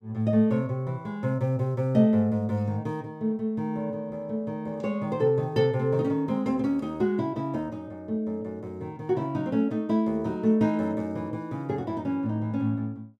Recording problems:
none

